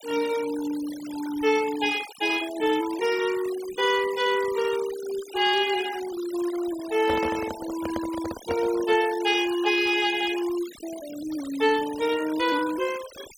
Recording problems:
denoising artefacts; signal-to-artefact ratio 14 dB
microphone handling noise; from 7 to 9 s; peak -2 dB vs average level

